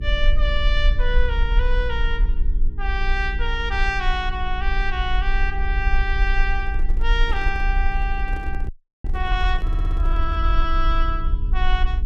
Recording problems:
electrical hum; 60 Hz, harmonics up to 420 Hz, SNR 11 dB
low-frequency rumble; below 46 Hz, strongest tone 24 Hz, SNR -2 dB
handling noise; from 6.5 to 10 s; peak -9 dB vs average level
frozen audio; at 8.5 s
audio stuttering; at 9.5 s

